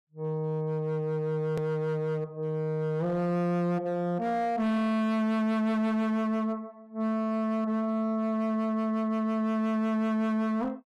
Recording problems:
distorted audio; hard clipping, signal-to-distortion ratio 12 dB
click at an edit; at 1.5 s

